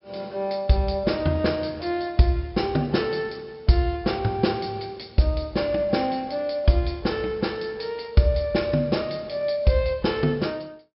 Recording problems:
treble missing; nothing above 5.3 kHz

